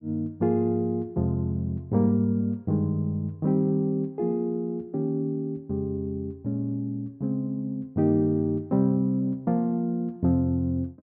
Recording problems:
none

